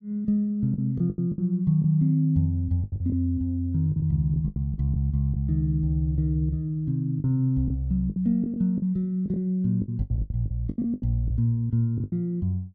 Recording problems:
lost packets; 11% of the sound replaced, filled with the last packet

